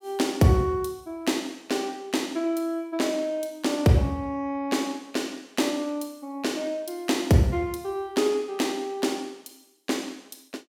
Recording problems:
none

